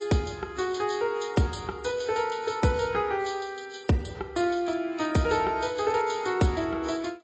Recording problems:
lossy compression; AAC, log-spectral distance 5 dB, nothing above 7.6 kHz

